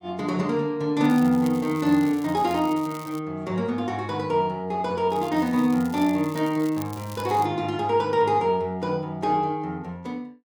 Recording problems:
crackle; from 1 to 3 s and from 5 to 7.5 s; loose cable, SNR 21 dB

